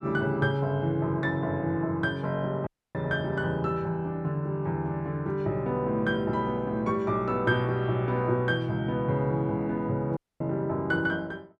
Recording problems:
dropout; at 2.5 s and at 10 s

